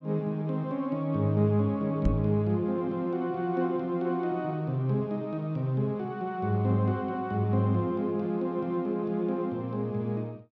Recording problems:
knock on the microphone; at 2 s; peak +4 dB vs average level

